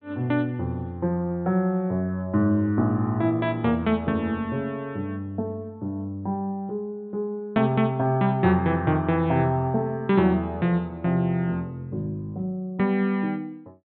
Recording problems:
treble cut off; nothing above 4 kHz

